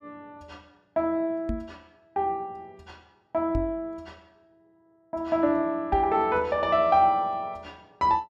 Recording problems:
microphone thump; at 1.5 s, at 3.5 s and at 6 s; peak -1 dB vs average level

